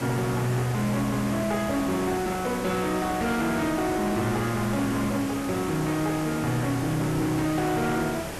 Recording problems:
distortion; soft clipping, signal-to-distortion ratio 11 dB
background hiss; slope -5 dB per octave, SNR 8 dB

